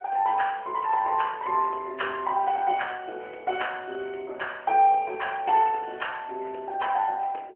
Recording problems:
phone line; 320 Hz to 3.1 kHz, AMR-NB

